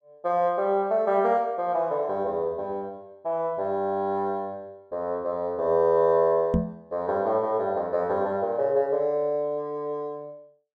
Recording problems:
microphone bump; at 6.5 s; peak +5 dB vs average level

